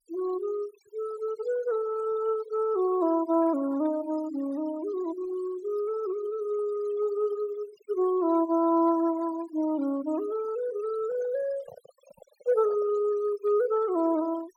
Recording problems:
noise reduction artefacts; signal-to-artefact ratio 20 dB
handling noise; from 11 to 13 s; peak -15 dB vs average level

